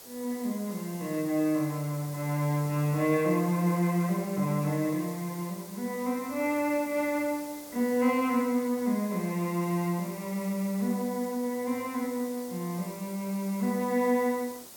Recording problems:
background hiss; SNR 15 dB

